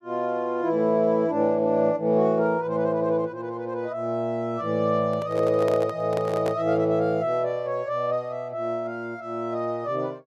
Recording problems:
handling noise; from 5 to 6.5 s; peak -3 dB vs average level

